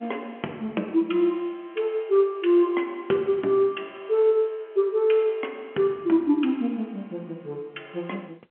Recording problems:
phone line; 240 Hz to 3.3 kHz, G.711

